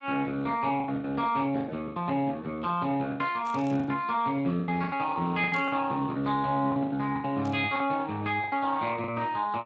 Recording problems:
lossy codec; Speex, log-spectral distance 3 dB
lost packets; 12% of the sound replaced, filled with the last packet
burst of static; at 3.5 s, at 5.5 s and at 7.5 s; peak -15 dB vs average level

